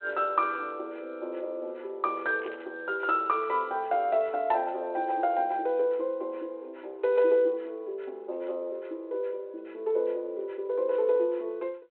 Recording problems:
phone line; 300 Hz to 3.2 kHz, G.726
burst of static; at 2.5 s; peak -13 dB vs average level

